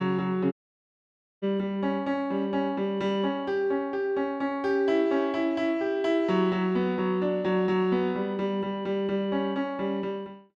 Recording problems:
dropout; at 0.5 s for 1 s

